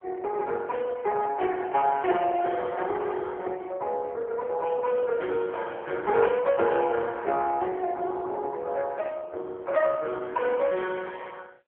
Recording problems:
telephone audio; 320 Hz to 3.4 kHz, AMR-NB

